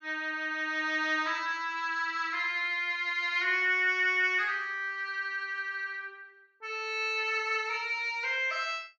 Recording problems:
treble cut off; nothing above 8 kHz

